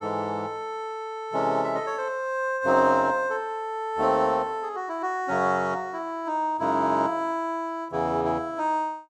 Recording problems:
none

